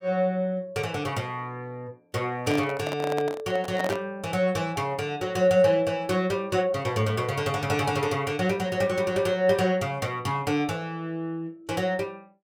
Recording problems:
microphone handling noise; from 2.5 to 4 s; peak -1 dB vs average level

